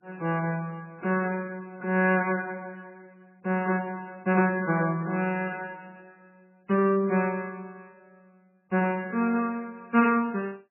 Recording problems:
lossy codec; MP3, log-spectral distance 3 dB, nothing above 2.4 kHz

